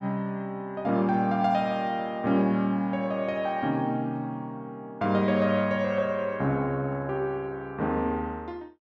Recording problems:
none

